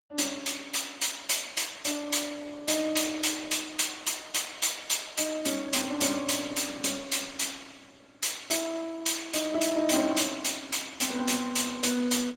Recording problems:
lossy compression; Opus, log-spectral distance 6 dB, nothing above 16.5 kHz

